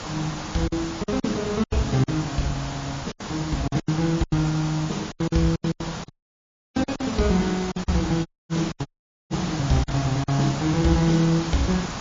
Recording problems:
codec artefacts; MP3, log-spectral distance 10 dB, nothing above 6.3 kHz
hiss; SNR 9 dB
lost packets; 11% of the sound replaced, filled with silence
audio cutting out; at 6 s for 0.5 s, at 8.5 s and at 9 s

